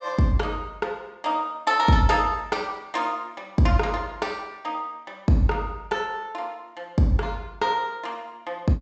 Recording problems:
treble missing; nothing above 8 kHz

